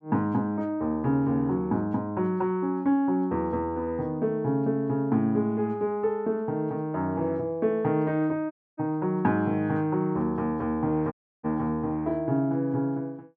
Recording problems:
audio cutting out; at 8.5 s and at 11 s

